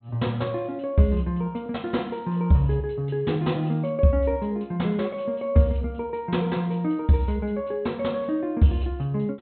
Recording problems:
low-pass filter; nothing above 4 kHz

